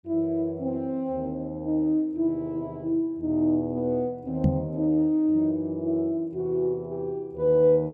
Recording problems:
knock on the microphone; at 4.5 s; peak +6 dB vs average level

